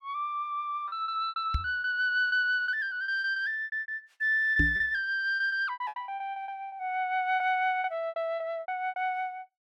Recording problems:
packet loss; 16% of the sound replaced, filled with repeated pitch periods
microphone thump; at 1.5 s and at 4.5 s; peak +4 dB vs average level

